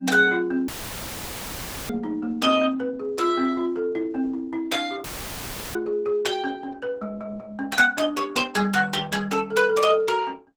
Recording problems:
lossy codec; Opus, log-spectral distance 3 dB, nothing above 19 kHz
audio cutting out; at 0.5 s for 1 s and at 5 s for 0.5 s; filled with static

